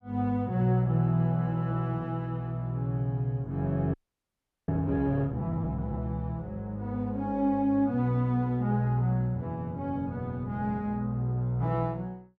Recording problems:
audio freezing; at 4 s for 0.5 s

